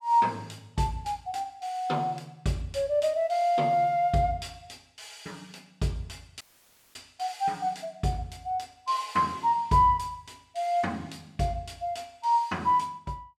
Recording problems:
dropout; at 6.5 s for 0.5 s

